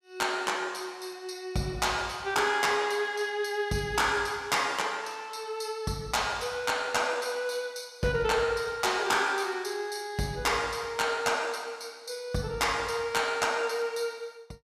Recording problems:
distortion; hard clipping, signal-to-distortion ratio 11 dB

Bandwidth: 15 kHz